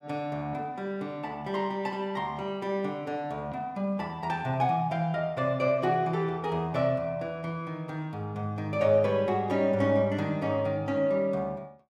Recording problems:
none

